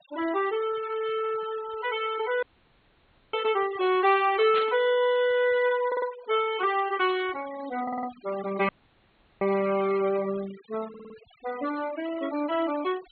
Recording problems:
low-pass filter; nothing above 4.3 kHz
noise reduction artefacts; signal-to-artefact ratio 18 dB
dropout; at 2.5 s for 1 s and at 8.5 s for 0.5 s
static burst; at 4.5 s; peak -3 dB vs average level
stutter; at 6 s, at 8 s and at 11 s

